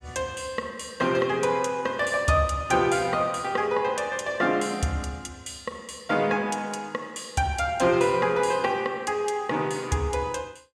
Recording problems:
none

